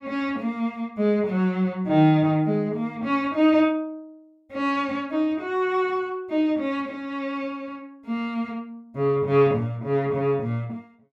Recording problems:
none

